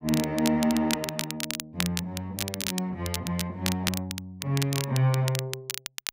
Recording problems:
crackle; vinyl, SNR 4 dB

